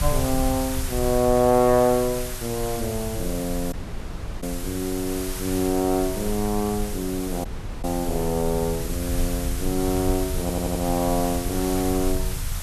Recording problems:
hiss; slope 0 dB per octave, SNR 9 dB
rumble; below 80 Hz, SNR 9 dB
audio cutting out; at 3.5 s for 0.5 s and at 7.5 s
stutter; at 10 s

